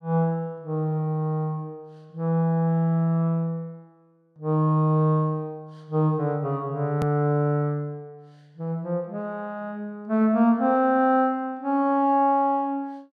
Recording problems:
click at an edit; at 7 s

